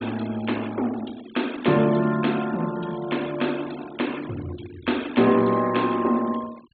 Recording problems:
treble cut off; nothing above 4.1 kHz
noise reduction artefacts; signal-to-artefact ratio 18 dB

